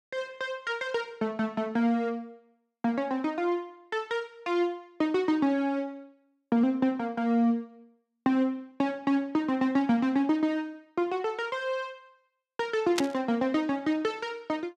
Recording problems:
burst of static; at 13 s; peak +4 dB vs average level

